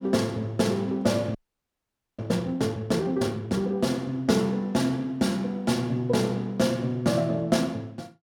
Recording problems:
frozen audio; at 1.5 s for 1 s

